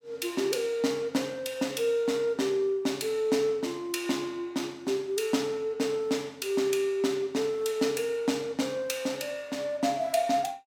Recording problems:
none

